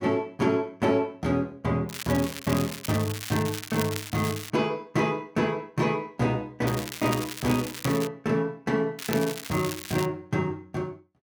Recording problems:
crackling; from 2 to 4.5 s, from 6.5 to 8 s and from 9 to 10 s; loose cable, SNR 9 dB

